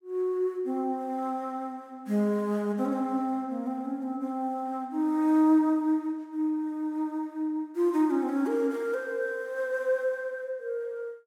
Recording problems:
none

